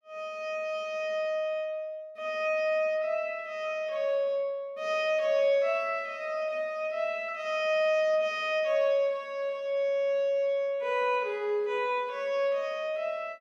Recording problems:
none

